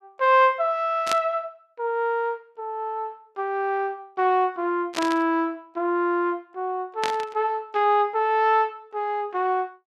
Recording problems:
burst of static; at 1 s, at 5 s and at 7 s; peak +1 dB vs average level

